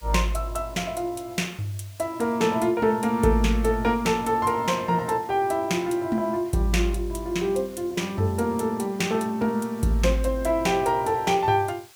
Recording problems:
background hiss; slope +2 dB per octave, SNR 25 dB

